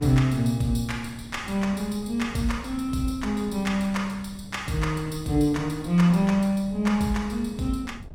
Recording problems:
wind noise; below 170 Hz, SNR 18 dB

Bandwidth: 16.5 kHz